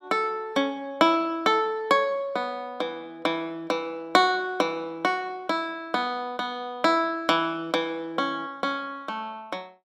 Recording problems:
none

